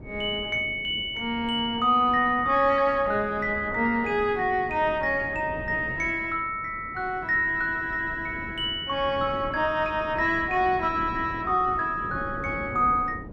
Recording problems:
wind on the microphone; below 340 Hz, SNR 16 dB

